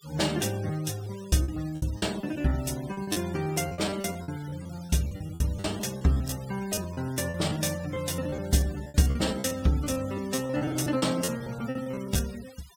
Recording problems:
noise reduction artefacts; signal-to-artefact ratio 17 dB
packet loss; 16% of the sound replaced, filled with repeated pitch periods

